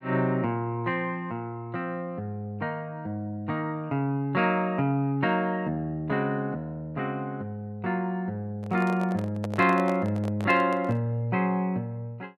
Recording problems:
microphone handling noise; from 8.5 to 11 s; peak -4 dB vs average level

